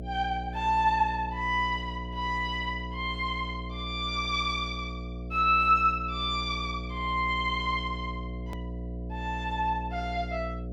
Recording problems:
hum; 60 Hz, harmonics up to 720 Hz, SNR 9 dB
hard cut with a click; at 8.5 s

